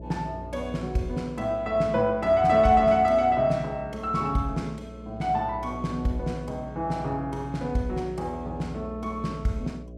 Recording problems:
hum; 60 Hz, harmonics up to 660 Hz, SNR 15 dB

